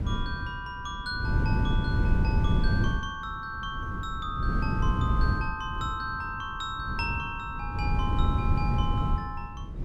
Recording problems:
wind on the microphone; below 140 Hz, SNR -4 dB

